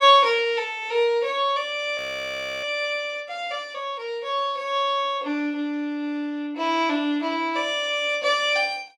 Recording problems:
audio freezing; at 2 s for 0.5 s

